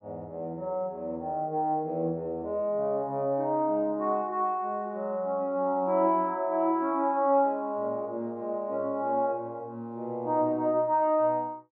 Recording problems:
none

